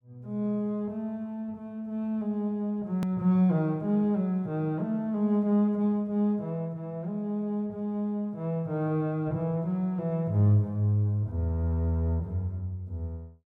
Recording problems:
click at an edit; at 3 s

